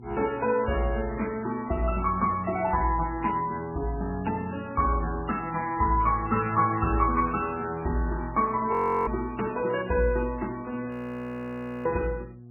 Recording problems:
lossy compression; MP3, log-spectral distance 4 dB, nothing above 2.5 kHz
hum; 60 Hz, harmonics up to 480 Hz, SNR 19 dB
frozen audio; at 8.5 s and at 11 s for 1 s

